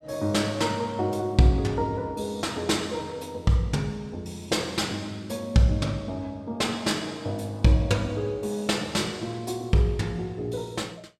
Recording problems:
none

